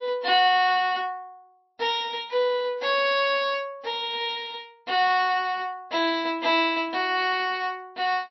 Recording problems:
codec artefacts; MP3, log-spectral distance 2 dB, nothing above 5.5 kHz

